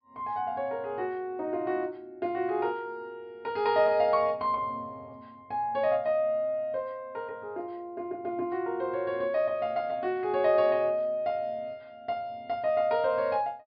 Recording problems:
low-pass filter; nothing above 5.5 kHz

